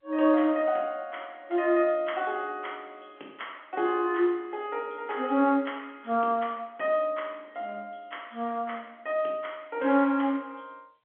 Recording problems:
phone line; 240 Hz to 3.4 kHz, G.711

